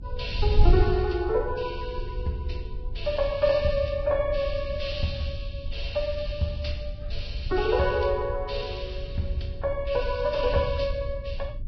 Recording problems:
codec artefacts; Vorbis, log-spectral distance 3 dB
wind noise; below 76 Hz, SNR 5 dB

